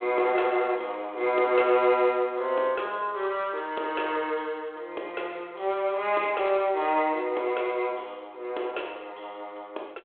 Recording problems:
phone line; 320 Hz to 3.5 kHz, G.726

